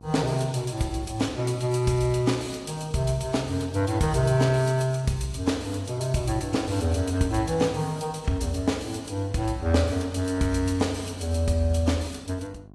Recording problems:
lossy codec; AAC, log-spectral distance 3 dB, nothing above 11.6 kHz
mains hum; 50 Hz, harmonics up to 1.1 kHz, SNR 24 dB

